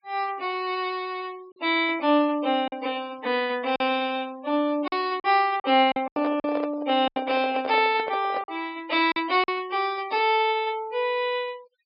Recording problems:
low-pass filter; nothing above 5.5 kHz
denoising artefacts; signal-to-artefact ratio 24 dB
packet loss; 5% of the sound replaced, filled with silence
microphone handling noise; from 6 to 8.5 s; peak -3 dB vs average level

